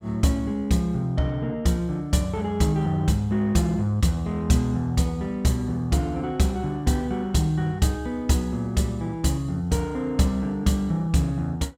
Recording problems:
none

